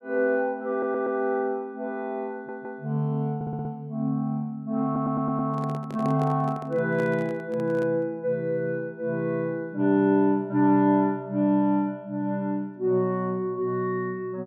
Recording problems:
audio stuttering; 4 times, first at 0.5 s
microphone handling noise; from 5 to 8 s; peak -7 dB vs average level

